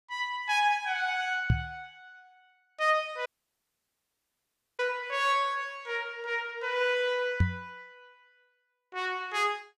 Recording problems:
microphone thump; at 1.5 s and at 7.5 s; peak +8 dB vs average level
audio cutting out; at 3.5 s for 1.5 s

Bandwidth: 15 kHz